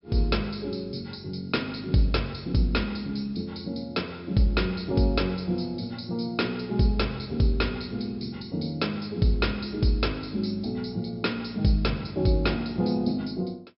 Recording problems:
treble cut off; nothing above 5.4 kHz

